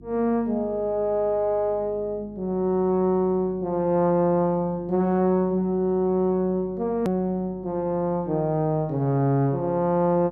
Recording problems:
hum; 50 Hz, harmonics up to 350 Hz, SNR 24 dB
hard cut with a click; at 7 s

